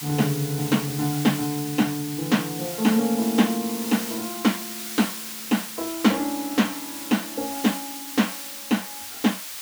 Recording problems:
hiss; slope +3 dB per octave, SNR 7 dB

